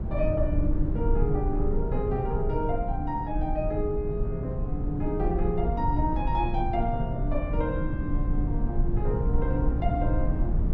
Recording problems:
rumble; below 100 Hz, SNR -1 dB

